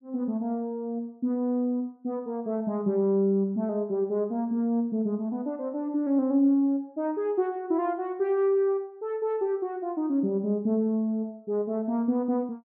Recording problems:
none

